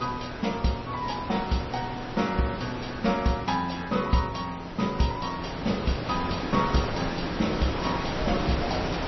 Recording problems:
lossy compression; MP3, log-spectral distance 7 dB, nothing above 5.8 kHz
wind on the microphone; below 1.3 kHz, SNR 5 dB

